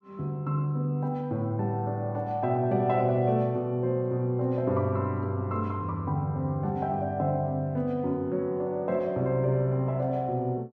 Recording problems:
none

